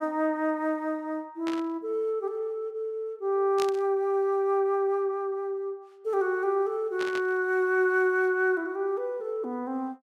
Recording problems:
burst of static; at 1.5 s, at 3.5 s and at 7 s; peak -5 dB vs average level

